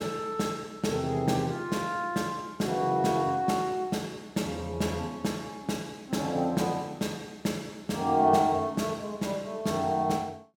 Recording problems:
none

